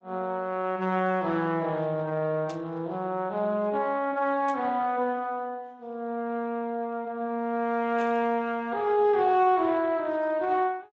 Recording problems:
lossy compression; Speex, log-spectral distance 2 dB
burst of static; at 2.5 s, at 4.5 s and at 8 s; peak -11 dB vs average level

